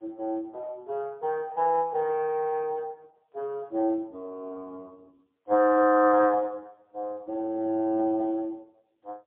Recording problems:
telephone audio; 240 Hz to 3.5 kHz, AMR-NB, then MP3

